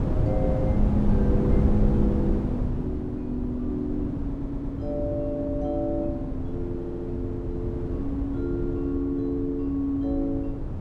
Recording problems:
wind on the microphone; below 200 Hz, SNR 0 dB
audio stuttering; at 4.5 s and at 7 s

